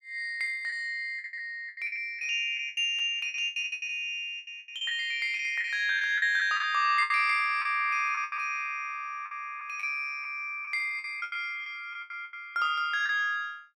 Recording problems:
lost packets; 14% of the sound replaced, filled with the last packet

